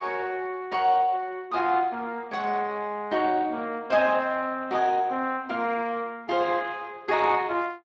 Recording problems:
lossy codec; Speex, log-spectral distance 3 dB

